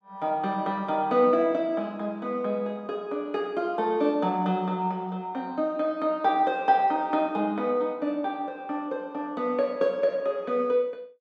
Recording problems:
none

